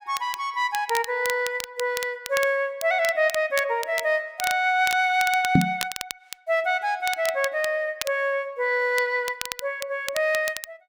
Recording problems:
crackling; vinyl, SNR 11 dB
microphone thump; at 5.5 s; peak +9 dB vs average level

